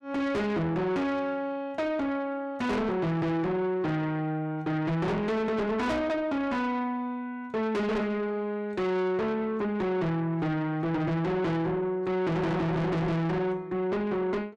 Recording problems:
distorted audio; soft clipping, signal-to-distortion ratio 6 dB

